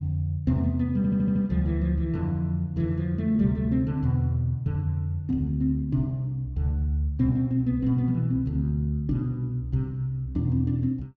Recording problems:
stutter; at 1 s

